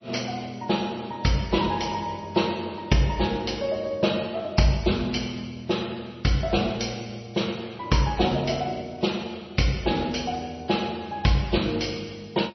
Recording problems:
lossy codec; MP3, log-spectral distance 6 dB, nothing above 5.8 kHz

